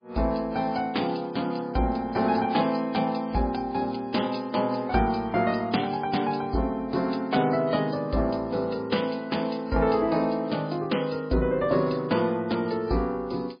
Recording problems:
lossy codec; MP3, log-spectral distance 5 dB, nothing above 5 kHz

